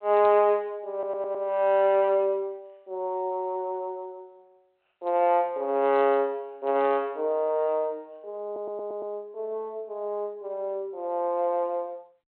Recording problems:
phone line; 300 Hz to 3.3 kHz, G.726
audio stuttering; at 1 s and at 8.5 s

